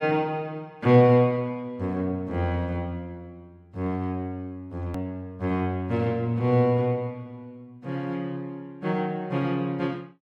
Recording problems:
edit click; at 5 s

